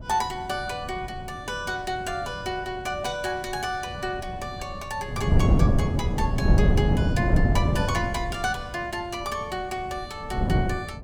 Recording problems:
wind noise; below 190 Hz, SNR -6 dB

